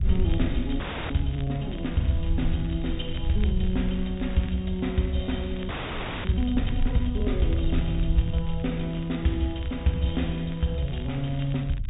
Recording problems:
low-pass filter; nothing above 4 kHz
low-frequency rumble; below 80 Hz, SNR 5 dB
crackle; vinyl, SNR 22 dB
audio freezing; at 1 s and at 5.5 s for 0.5 s

